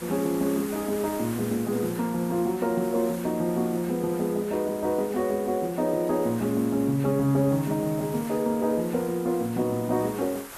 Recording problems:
hiss; SNR 15 dB

